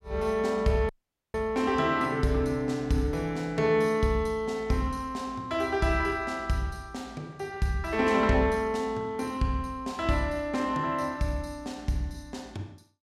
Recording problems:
dropout; at 1 s

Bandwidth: 16 kHz